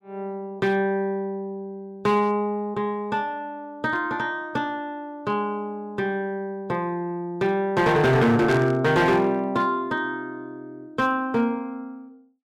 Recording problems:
distorted audio; hard clipping, uneven, signal-to-distortion ratio 11 dB
burst of static; at 8.5 s; peak -7 dB vs average level

